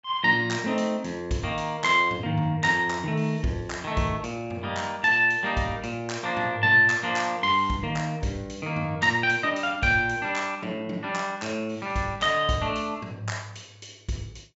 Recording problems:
treble missing; nothing above 8 kHz

